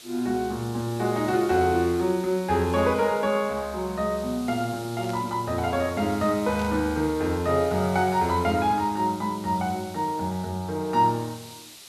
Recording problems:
background hiss; SNR 18 dB
burst of static; at 5 s and at 6.5 s; peak -13 dB vs average level

